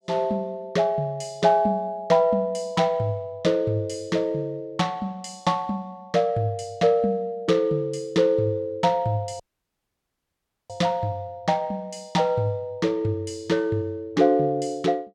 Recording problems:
dropout; at 9.5 s for 1.5 s

